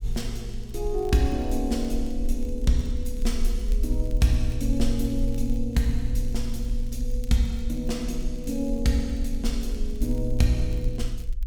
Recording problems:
low-frequency rumble; below 44 Hz, SNR 4 dB
crackle; vinyl, SNR 27 dB

